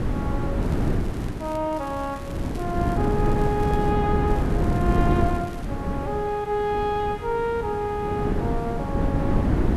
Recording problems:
hiss; SNR 17 dB
wind noise; below 290 Hz, SNR -2 dB
crackle; at 0.5 s, from 1.5 to 4 s and from 4.5 to 5.5 s; loose cable, SNR 21 dB

